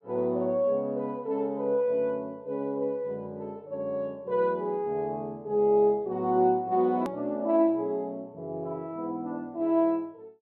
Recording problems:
click at an edit; at 7 s

